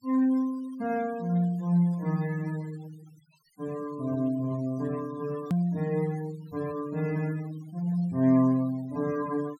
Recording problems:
noise reduction artefacts; signal-to-artefact ratio 23 dB
click at an edit; at 5.5 s

